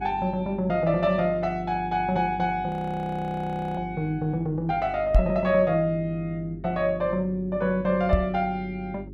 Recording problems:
hum; 50 Hz, harmonics up to 400 Hz, SNR 16 dB
frozen audio; at 2.5 s for 1 s
knock on the microphone; at 5 s and at 8 s; peak +9 dB vs average level

